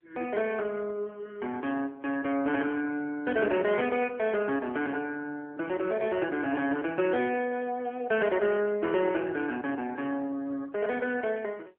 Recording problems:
phone line; 300 Hz to 3.3 kHz, AMR-NB

